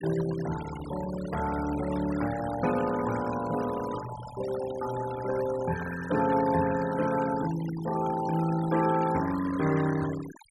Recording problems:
denoising artefacts; signal-to-artefact ratio 12 dB

